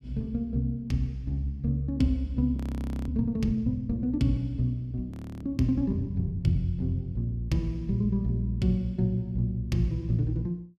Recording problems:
audio freezing; at 2.5 s for 0.5 s and at 5 s

